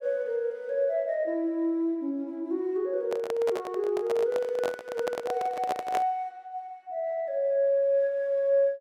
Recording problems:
handling noise; from 3 to 6 s; peak 0 dB vs average level

